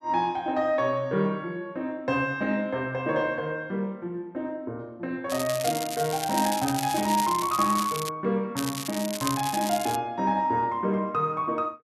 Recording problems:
crackle; from 5.5 to 8 s and from 8.5 to 10 s; loose cable, SNR 7 dB

